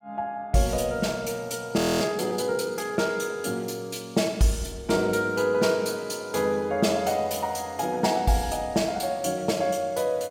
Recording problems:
frozen audio; at 2 s

